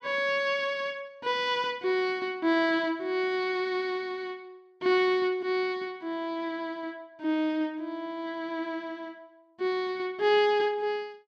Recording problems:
none

